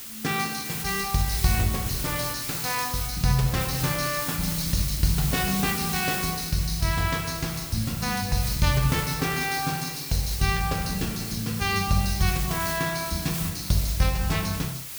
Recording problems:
hiss; SNR 5 dB

